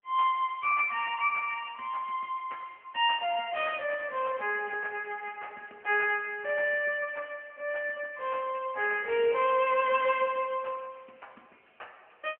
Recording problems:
phone line; 240 Hz to 3.1 kHz, AMR-NB

